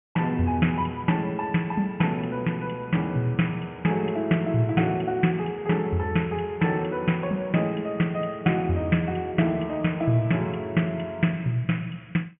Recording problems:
treble missing; nothing above 3.1 kHz

